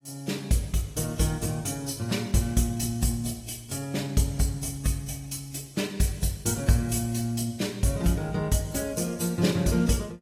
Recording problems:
codec artefacts; AAC, log-spectral distance 4 dB, nothing above 14.7 kHz

